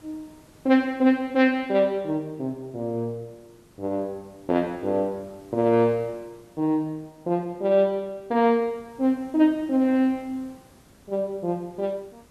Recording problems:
hiss; slope -5 dB per octave, SNR 29 dB

